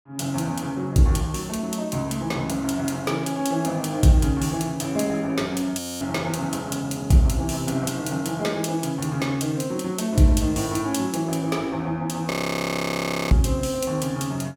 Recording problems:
frozen audio; at 6 s and at 12 s for 1 s

